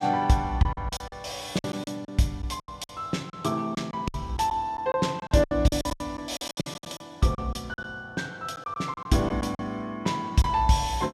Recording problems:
packet loss; 13% of the sound replaced, filled with silence

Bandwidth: 15 kHz